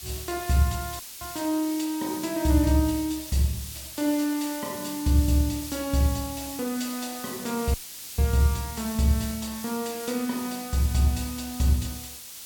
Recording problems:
background hiss; SNR 10 dB
dropout; at 1 s and at 7.5 s

